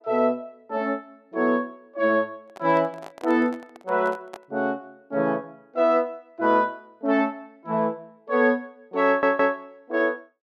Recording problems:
handling noise; from 2.5 to 4.5 s; peak -10 dB vs average level
stutter; at 9 s

